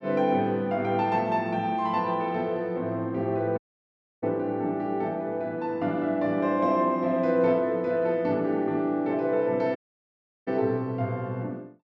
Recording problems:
dropout; at 3.5 s for 0.5 s and at 10 s for 0.5 s

